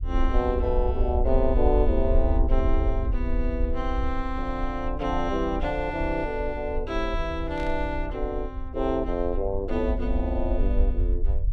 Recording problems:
low-frequency rumble; below 56 Hz, SNR 2 dB
burst of static; at 7.5 s; peak -12 dB vs average level

